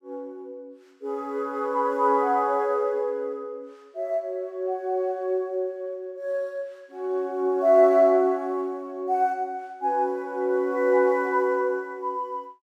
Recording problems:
none

